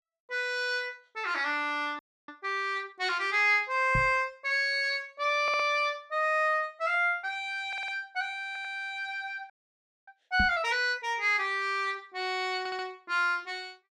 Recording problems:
audio freezing; at 2 s and at 9.5 s for 0.5 s
knock on the microphone; at 4 s and at 10 s; peak 0 dB vs average level
stutter; 4 times, first at 5.5 s

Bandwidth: 12.5 kHz